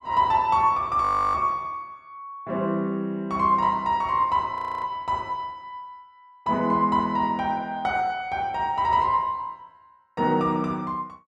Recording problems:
audio freezing; at 1 s and at 4.5 s

